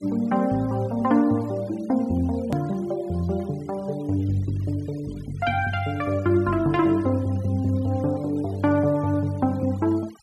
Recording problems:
noise reduction artefacts; signal-to-artefact ratio 26 dB
hard cut with a click; at 2.5 s

